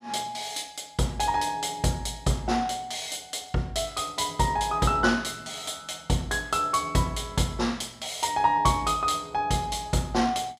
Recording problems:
none

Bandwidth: 15 kHz